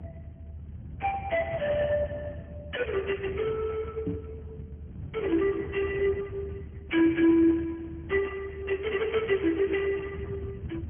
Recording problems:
treble cut off; nothing above 3.1 kHz
lossy compression; Speex, log-spectral distance 3 dB
rumble; below 160 Hz, strongest tone 76 Hz, SNR 13 dB
microphone thump; at 4 s; peak 0 dB vs average level

